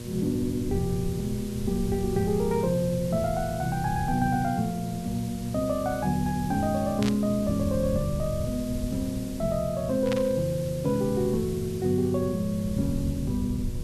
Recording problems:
electrical hum; 60 Hz, harmonics up to 1.1 kHz, SNR 13 dB
background hiss; slope 0 dB per octave, SNR 17 dB
low-frequency rumble; below 110 Hz, SNR 11 dB
static burst; at 7 s and at 10 s; peak -3 dB vs average level

